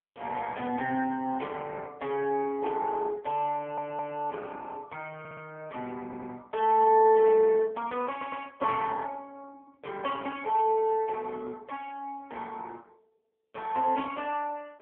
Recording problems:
telephone audio; 150 Hz to 3.2 kHz, AMR-NB
audio stuttering; 4 times, first at 3.5 s

